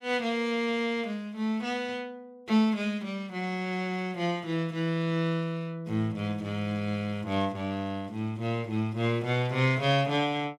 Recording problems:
none

